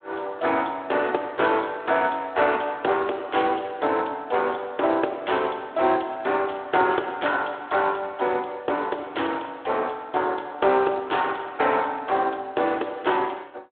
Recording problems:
phone line; 300 Hz to 3.7 kHz, Speex

